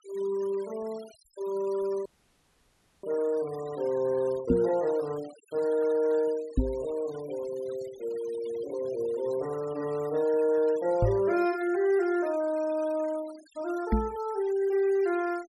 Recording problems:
noise reduction artefacts; signal-to-artefact ratio 21 dB
audio cutting out; at 2 s for 1 s
knock on the microphone; 4 times, first at 4.5 s; peak +7 dB vs average level

